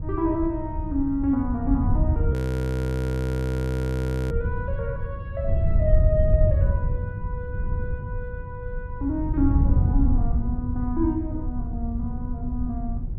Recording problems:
wind noise; below 110 Hz, SNR -3 dB
frozen audio; at 2.5 s for 2 s

